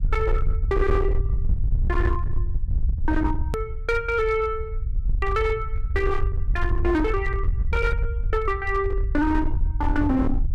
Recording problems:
distortion; hard clipping, signal-to-distortion ratio 11 dB
low-frequency rumble; below 72 Hz, SNR 1 dB
hard cut with a click; at 3.5 s

